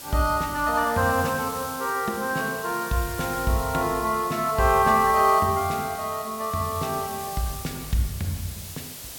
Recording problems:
hiss; slope -1 dB per octave, SNR 12 dB

